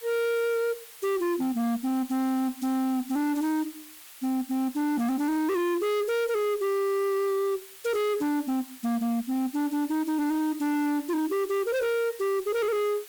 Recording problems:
distortion; hard clipping, uneven, signal-to-distortion ratio 8 dB
background hiss; SNR 17 dB

